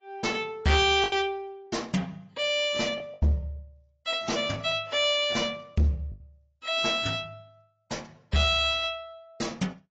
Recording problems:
codec artefacts; AAC, log-spectral distance 3 dB, nothing above 7.3 kHz
distortion; soft clipping, signal-to-distortion ratio 11 dB
packet loss; 4% of the sound replaced, filled with the last packet

